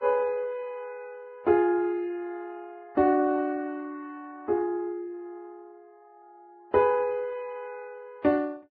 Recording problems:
lossy codec; Vorbis, log-spectral distance 2 dB, nothing above 10.7 kHz

